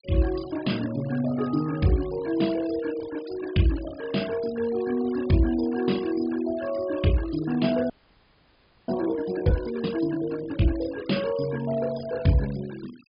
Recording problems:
treble cut off; nothing above 5.1 kHz
noise reduction artefacts; signal-to-artefact ratio 18 dB
audio freezing; at 8 s for 1 s

